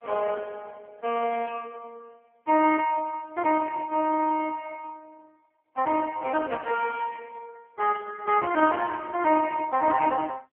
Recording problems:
phone line; 260 Hz to 3.3 kHz, AMR-NB

